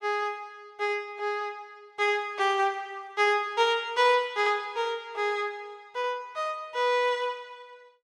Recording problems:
none

